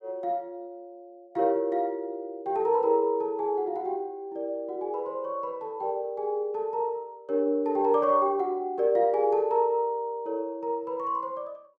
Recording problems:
none

